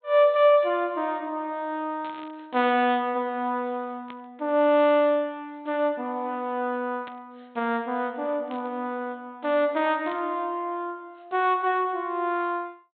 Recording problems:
treble cut off; nothing above 4 kHz
static burst; 5 times, first at 2 s; peak -14 dB vs average level

